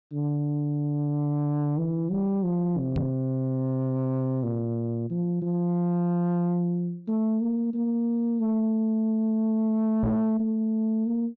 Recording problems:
low-pass filter; nothing above 8 kHz
distorted audio; soft clipping, signal-to-distortion ratio 11 dB
microphone thump; at 3 s and at 10 s; peak +4 dB vs average level

